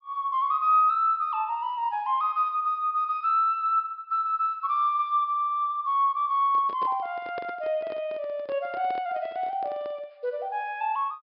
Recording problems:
treble cut off; nothing above 5.5 kHz
microphone handling noise; from 6.5 to 10 s; peak -8 dB vs average level

